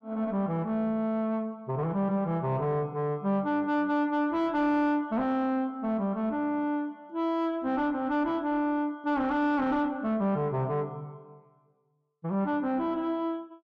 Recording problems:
distorted audio; soft clipping, signal-to-distortion ratio 10 dB

